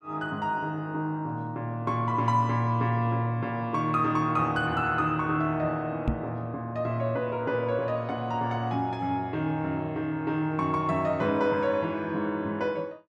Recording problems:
microphone thump; at 6 s; peak +5 dB vs average level

